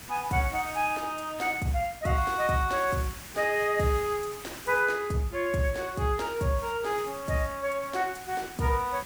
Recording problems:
background hiss; slope -1 dB per octave, SNR 15 dB

